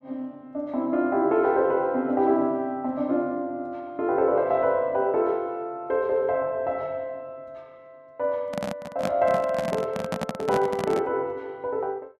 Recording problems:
handling noise; from 8.5 to 11 s; peak +1 dB vs average level

